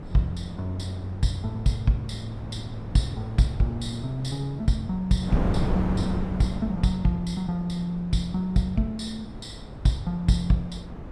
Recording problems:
wind on the microphone; below 290 Hz, SNR 8 dB

